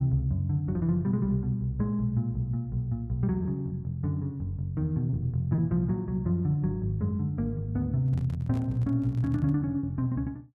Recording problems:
packet loss; 1.1% of the sound replaced, filled with repeated pitch periods
handling noise; from 8 to 9.5 s; peak -8 dB vs average level

